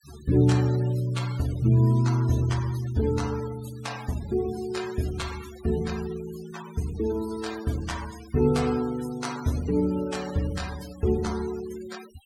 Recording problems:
denoising artefacts; signal-to-artefact ratio 17 dB

